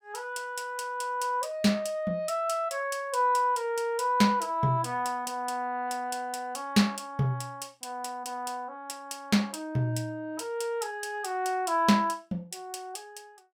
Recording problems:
none

